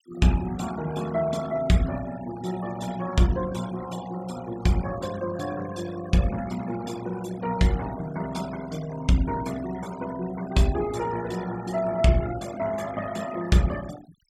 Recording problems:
denoising artefacts; signal-to-artefact ratio 16 dB

